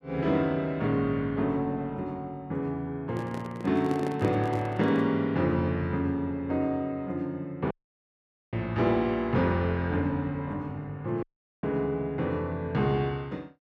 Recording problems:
handling noise; from 3 to 5 s; peak -4 dB vs average level
audio cutting out; at 7.5 s for 1 s and at 11 s

